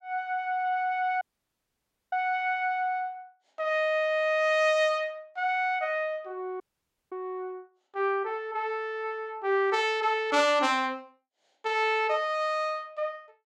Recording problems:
dropout; at 1 s for 1 s and at 6.5 s for 0.5 s

